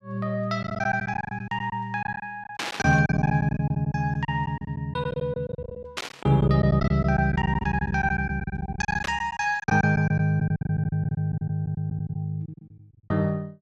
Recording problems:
lost packets; 16% of the sound replaced, filled with silence
static burst; at 2.5 s, at 6 s and at 9 s; peak 0 dB vs average level

